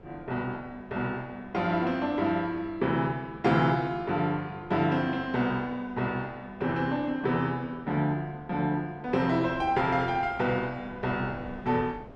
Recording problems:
wind on the microphone; below 550 Hz, SNR 21 dB

